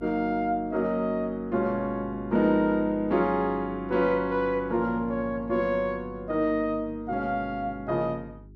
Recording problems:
hum; 50 Hz, harmonics up to 400 Hz, SNR 20 dB

